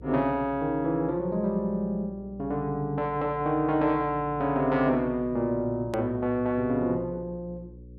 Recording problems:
hum; 60 Hz, harmonics up to 540 Hz, SNR 19 dB
edit click; at 6 s

